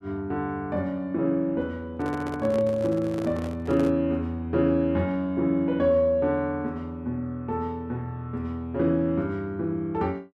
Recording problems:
handling noise; from 2 to 4 s; peak -6 dB vs average level

